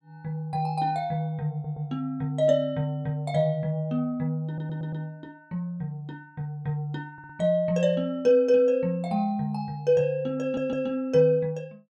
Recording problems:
audio stuttering; 4 times, first at 1.5 s

